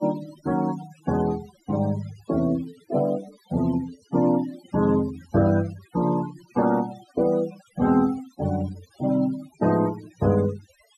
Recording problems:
denoising artefacts; signal-to-artefact ratio 17 dB

